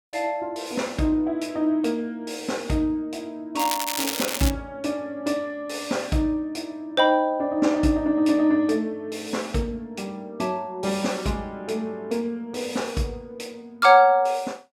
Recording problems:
crackling; at 3.5 s; loose cable, SNR 4 dB

